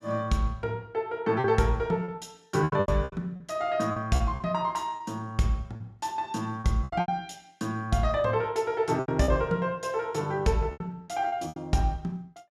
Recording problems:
lost packets; 9% of the sound replaced, filled with repeated pitch periods

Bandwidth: 14 kHz